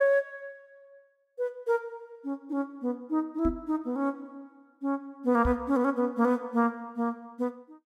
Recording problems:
microphone thump; at 3.5 s and at 5.5 s; peak +2 dB vs average level

